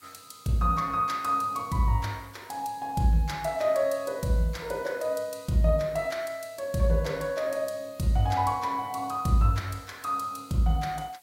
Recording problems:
background hiss; slope 0 dB per octave, SNR 28 dB

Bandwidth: 16 kHz